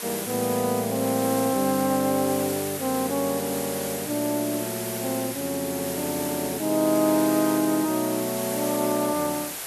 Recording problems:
background hiss; SNR 6 dB

